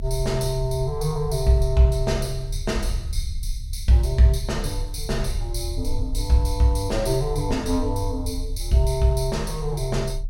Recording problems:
low-frequency rumble; below 60 Hz, strongest tone 34 Hz, SNR 8 dB

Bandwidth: 16.5 kHz